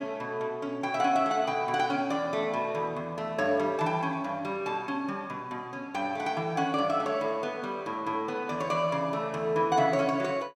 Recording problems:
none

